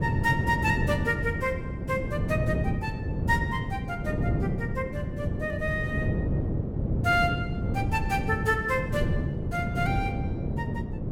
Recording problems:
wind on the microphone; below 230 Hz, SNR 0 dB

